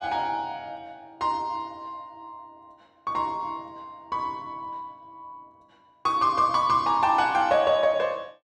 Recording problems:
none

